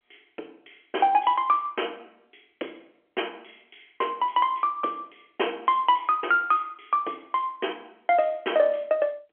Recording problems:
phone line; 260 Hz to 3.3 kHz, G.711

